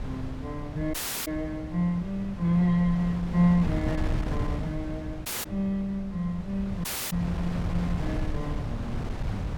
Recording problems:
wind noise; below 180 Hz, SNR 6 dB
audio cutting out; at 1 s, at 5.5 s and at 7 s

